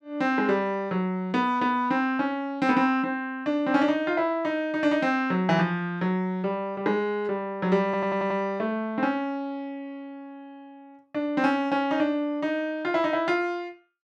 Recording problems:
audio stuttering; at 8 s

